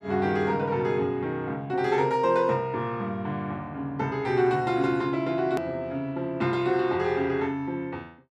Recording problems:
edit click; at 5.5 s

